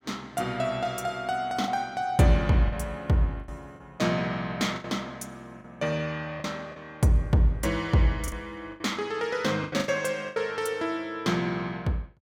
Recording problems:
packet loss; 6% of the sound replaced, filled with the last packet

